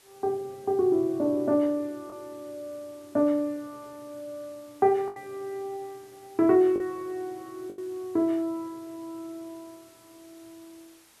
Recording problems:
hiss; slope -1 dB per octave, SNR 28 dB
packet loss; 2% of the sound replaced, filled with the last packet

